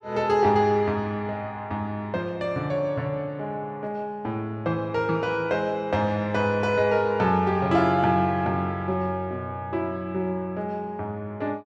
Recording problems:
none

